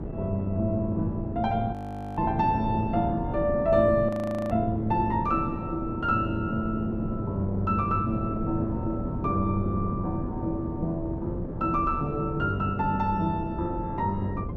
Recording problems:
wind noise; below 310 Hz, SNR 6 dB
frozen audio; at 1.5 s and at 4 s

